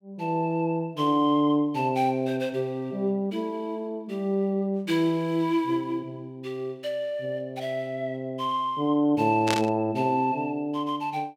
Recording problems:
static burst; at 9.5 s; peak +3 dB vs average level

